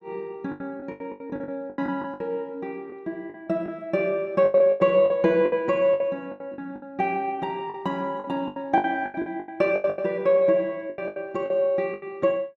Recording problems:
packet loss; 16% of the sound replaced, filled with the last packet

